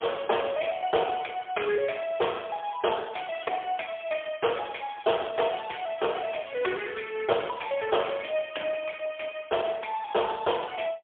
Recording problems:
phone line; 260 Hz to 3.4 kHz, AMR-NB, then MP3

